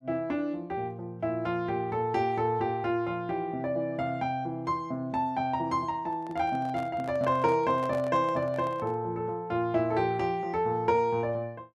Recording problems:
microphone handling noise; from 6 to 9 s; peak -8 dB vs average level

